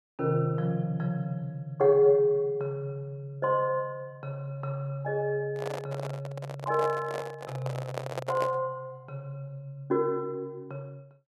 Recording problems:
handling noise; from 5.5 to 8.5 s; peak 0 dB vs average level

